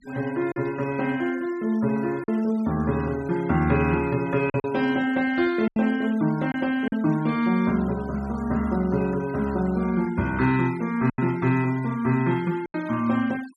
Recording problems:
denoising artefacts; signal-to-artefact ratio 20 dB
lost packets; 3% of the sound replaced, filled with silence

